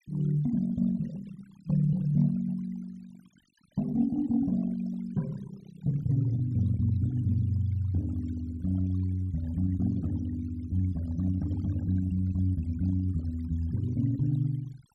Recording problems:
noise reduction artefacts; signal-to-artefact ratio 23 dB

